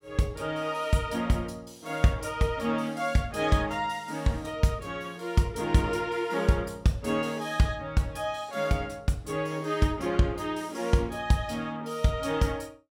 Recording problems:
none

